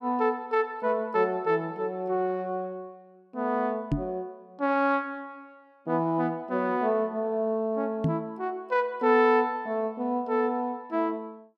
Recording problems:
microphone bump; at 4 s and at 8 s; peak +4 dB vs average level

